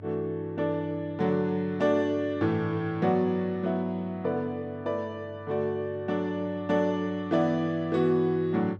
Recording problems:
hum; 50 Hz, harmonics up to 600 Hz, SNR 18 dB

